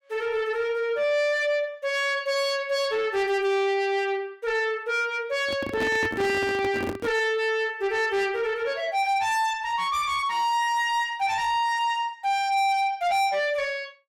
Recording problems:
distorted audio; soft clipping, signal-to-distortion ratio 11 dB
handling noise; from 5.5 to 7 s; peak 0 dB vs average level

